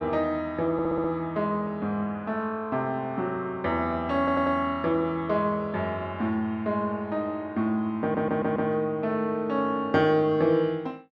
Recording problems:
stutter; at 0.5 s, at 4 s and at 8 s

